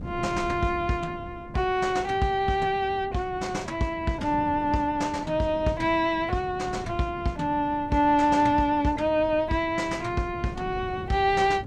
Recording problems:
wind on the microphone; below 260 Hz, SNR 15 dB

